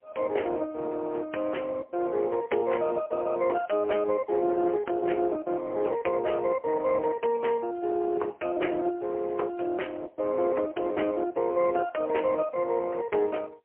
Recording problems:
telephone audio; 320 Hz to 3.1 kHz, AMR-NB, then MP3

